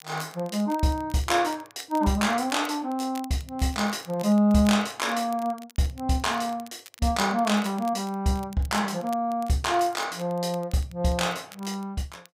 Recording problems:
crackle; vinyl, SNR 22 dB

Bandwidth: 15.5 kHz